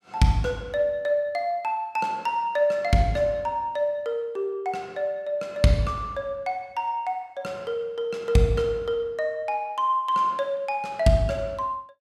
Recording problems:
none

